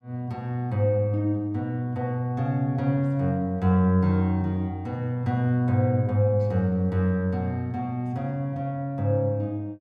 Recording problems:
none

